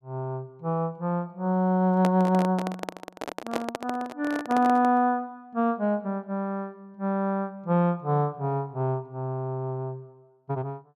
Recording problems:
microphone handling noise; from 2 to 5 s; peak +2 dB vs average level

